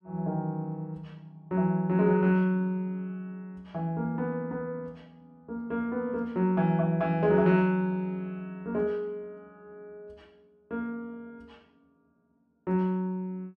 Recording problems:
none

